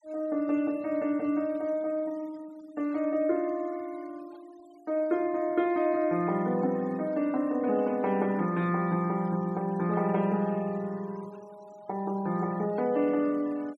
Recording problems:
noise reduction artefacts; signal-to-artefact ratio 26 dB

